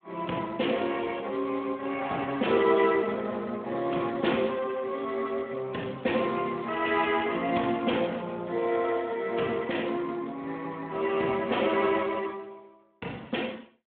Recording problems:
phone line; 280 Hz to 3.6 kHz, Speex

